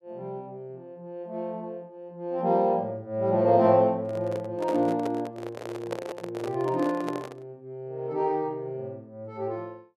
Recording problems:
microphone handling noise; from 4 to 7.5 s; peak -2 dB vs average level

